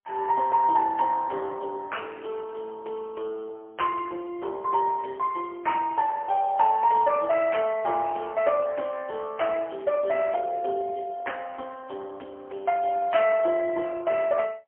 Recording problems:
phone line; 320 Hz to 3.1 kHz, AMR-NB, then MP3

